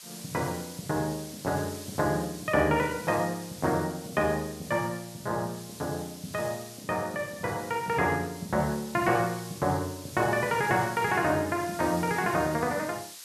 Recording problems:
background hiss; slope +3 dB per octave, SNR 14 dB

